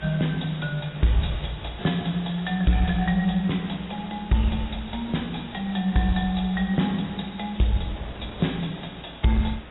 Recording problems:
lossy compression; AAC, log-spectral distance 10 dB, nothing above 3.8 kHz
distortion; soft clipping, signal-to-distortion ratio 11 dB
electrical hum; 60 Hz, harmonics up to 600 Hz, SNR 24 dB
hiss; SNR 19 dB
wind on the microphone; below 820 Hz, SNR 23 dB

